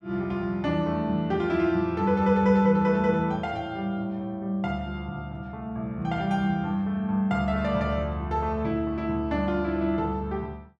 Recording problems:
none

